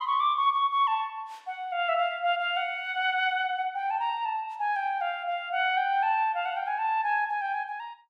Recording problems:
none

